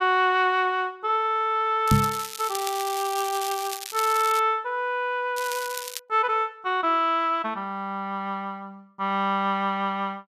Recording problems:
crackling; from 2 to 4.5 s and at 5.5 s; loose cable, SNR 9 dB
knock on the microphone; at 2 s; peak +8 dB vs average level

